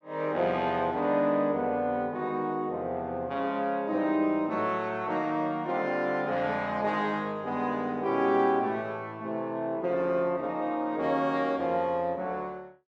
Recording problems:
none

